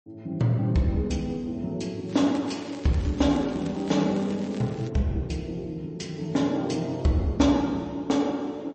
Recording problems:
lossy codec; MP3, log-spectral distance 2 dB, nothing above 7.8 kHz
crackling; from 2 to 5 s; loose cable, SNR 21 dB

